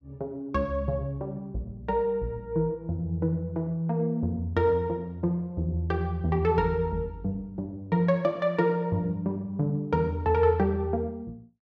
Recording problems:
none

